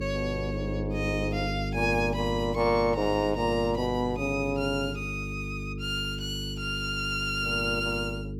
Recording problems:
hum; 50 Hz, harmonics up to 450 Hz, SNR 6 dB

